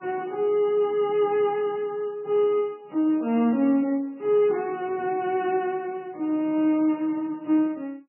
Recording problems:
lossy codec; MP3, log-spectral distance 2 dB, nothing above 2.9 kHz

